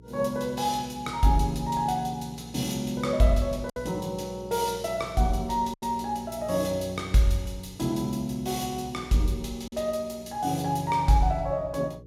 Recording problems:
hum; 60 Hz, harmonics up to 480 Hz, SNR 19 dB
lost packets; 1.5% of the sound replaced, filled with silence

